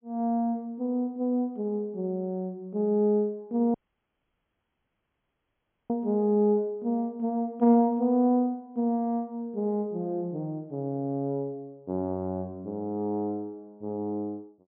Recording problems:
treble missing; nothing above 3.3 kHz
dropout; at 3.5 s for 2 s

